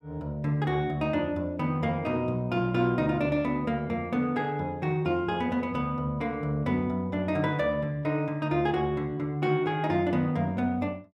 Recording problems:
none

